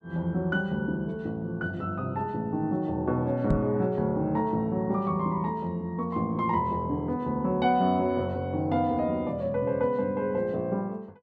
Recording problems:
microphone thump; at 3.5 s; peak +5 dB vs average level

